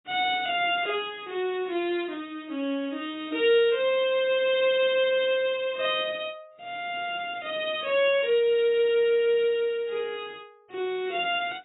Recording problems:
lossy compression; AAC, log-spectral distance 2 dB, nothing above 3.3 kHz

